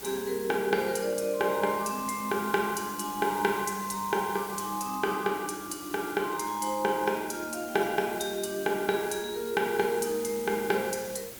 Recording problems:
background hiss; slope -3 dB per octave, SNR 13 dB

